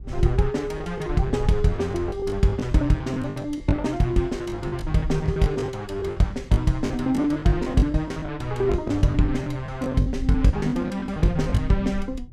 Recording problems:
low-frequency rumble; below 70 Hz, SNR 12 dB
packet loss; 14% of the sound replaced, filled with the last packet

